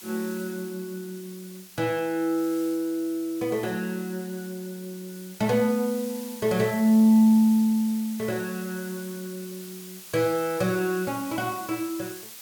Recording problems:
hiss; slope +2 dB per octave, SNR 16 dB

